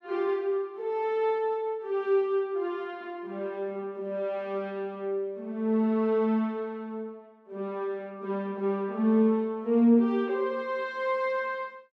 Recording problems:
none

